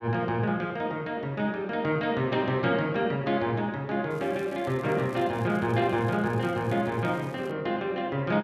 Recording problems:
crackle; from 4 to 7.5 s; loose cable, SNR 27 dB

